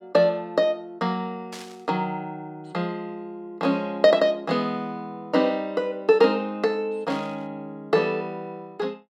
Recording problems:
static burst; at 1.5 s and at 7 s; peak -10 dB vs average level

